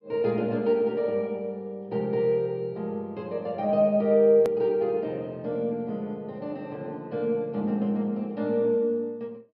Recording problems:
low-pass filter; nothing above 5.5 kHz
edit click; at 4.5 s

